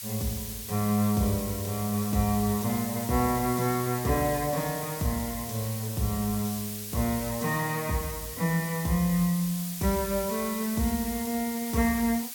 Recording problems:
hiss; slope +5 dB per octave, SNR 7 dB

